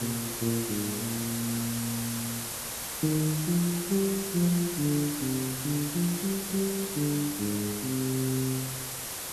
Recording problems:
hiss; slope -1 dB per octave, SNR 3 dB

